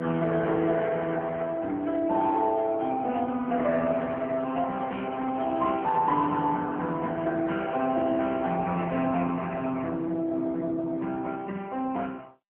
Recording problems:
telephone audio; 190 Hz to 3.6 kHz, AMR-NB
handling noise; from 4 to 6.5 s; peak -7 dB vs average level

